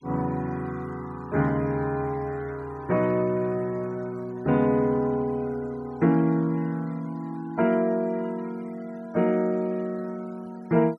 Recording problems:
denoising artefacts; signal-to-artefact ratio 27 dB

